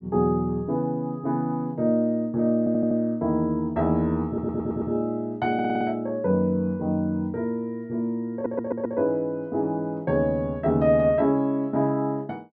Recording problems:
stutter; 4 times, first at 2.5 s

